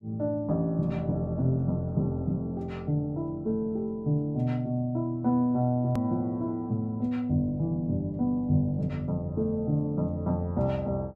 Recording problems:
hard cut with a click; at 6 s

